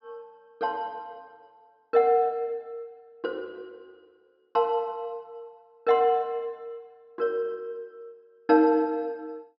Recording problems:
treble cut off; nothing above 5.7 kHz

